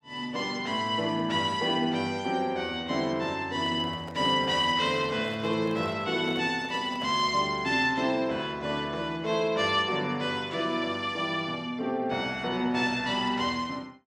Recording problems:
microphone handling noise; from 3.5 to 7.5 s; peak -10 dB vs average level

